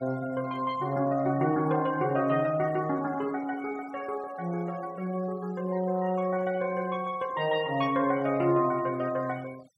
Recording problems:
denoising artefacts; signal-to-artefact ratio 23 dB

